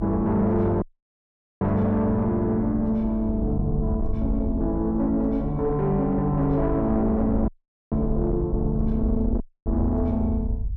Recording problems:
distortion; soft clipping, signal-to-distortion ratio 12 dB
rumble; below 82 Hz, SNR 7 dB
audio cutting out; at 1 s for 1 s, at 7.5 s and at 9.5 s

